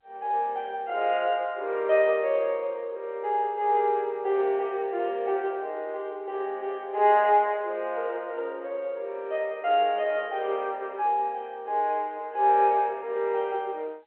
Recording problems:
telephone audio; 320 Hz to 3.3 kHz, G.711

